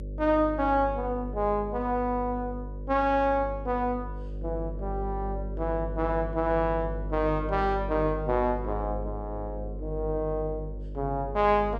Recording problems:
hum; 50 Hz, harmonics up to 600 Hz, SNR 8 dB

